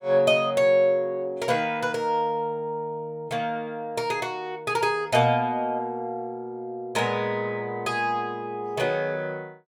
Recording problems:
none

